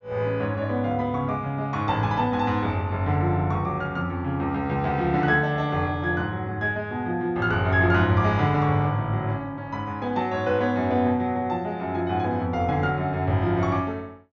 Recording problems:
low-pass filter; nothing above 6.9 kHz

